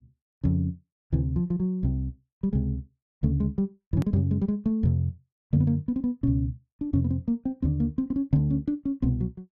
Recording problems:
click at an edit; at 4 s

